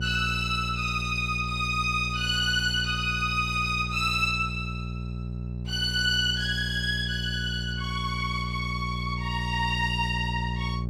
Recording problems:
hum; 60 Hz, harmonics up to 600 Hz, SNR 7 dB

